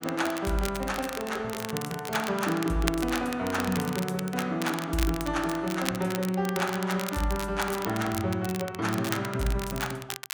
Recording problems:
crackling; vinyl, SNR 9 dB

